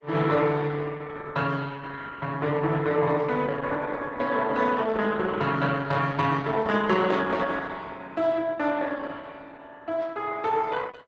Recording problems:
lossy codec; Opus, log-spectral distance 4 dB, nothing above 7.8 kHz

